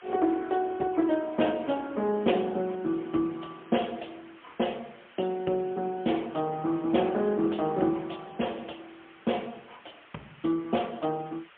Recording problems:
telephone audio; 190 Hz to 3.2 kHz, AMR-NB, then MP3
background hiss; SNR 24 dB

